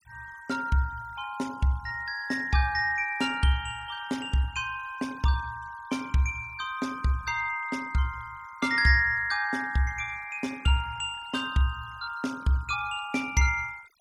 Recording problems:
denoising artefacts; signal-to-artefact ratio 22 dB

